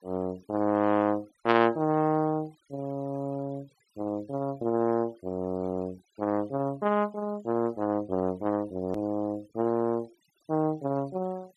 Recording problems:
noise reduction artefacts; signal-to-artefact ratio 27 dB
hard cut with a click; at 9 s

